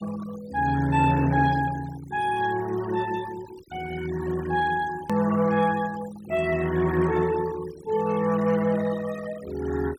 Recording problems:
denoising artefacts; signal-to-artefact ratio 18 dB
hard cut with a click; at 5 s

